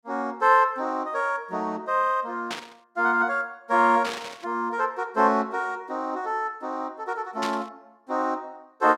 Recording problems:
static burst; at 2.5 s, at 4 s and at 7.5 s; peak -3 dB vs average level

